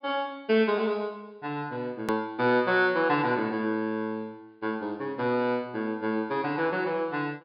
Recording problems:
treble cut off; nothing above 5.5 kHz
click at an edit; at 2 s

